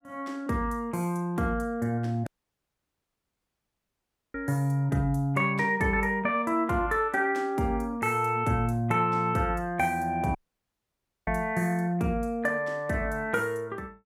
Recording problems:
dropout; at 2.5 s for 2 s and at 10 s for 1 s

